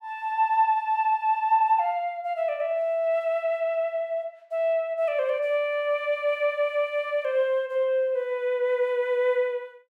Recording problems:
none

